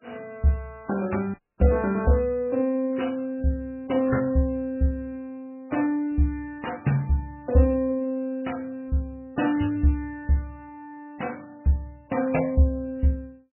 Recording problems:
codec artefacts; MP3, log-spectral distance 2 dB, nothing above 2.9 kHz
audio cutting out; at 1.5 s

